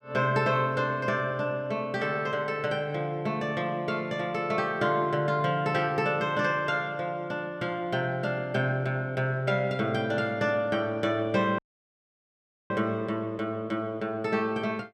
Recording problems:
audio cutting out; at 12 s for 1 s

